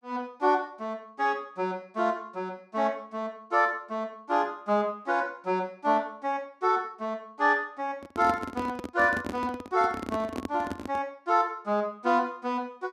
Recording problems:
handling noise; from 8 to 11 s; peak -1 dB vs average level

